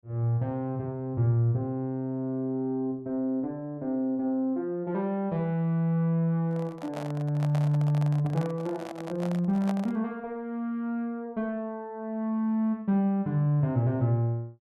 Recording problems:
microphone handling noise; from 6.5 to 10 s; peak -4 dB vs average level

